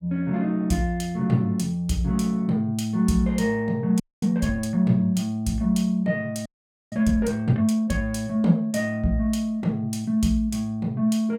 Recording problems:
audio freezing; at 4 s and at 6.5 s

